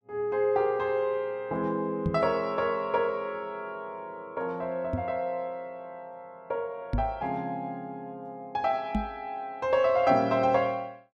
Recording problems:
microphone thump; 4 times, first at 2 s; peak +4 dB vs average level

